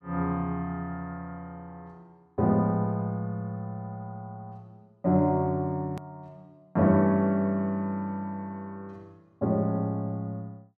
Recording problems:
edit click; at 6 s

